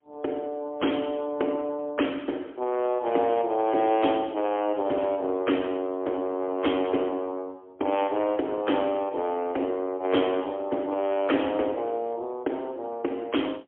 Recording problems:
telephone audio; 240 Hz to 3.4 kHz, AMR-NB, then MP3

